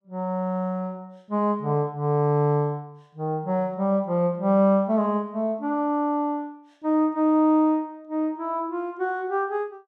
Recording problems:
none

